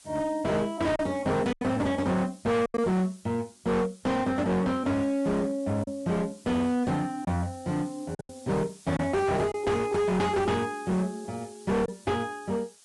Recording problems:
lossy codec; Vorbis, log-spectral distance 6 dB, nothing above 10.4 kHz
distortion; hard clipping, uneven, signal-to-distortion ratio 7 dB
background hiss; SNR 23 dB
lost packets; 4% of the sound replaced, filled with silence

